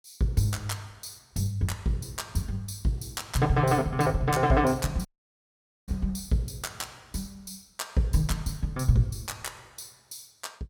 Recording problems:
audio cutting out; at 5 s for 1 s

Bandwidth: 17 kHz